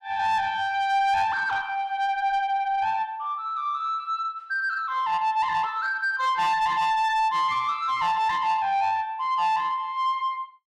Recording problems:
distorted audio; soft clipping, signal-to-distortion ratio 12 dB

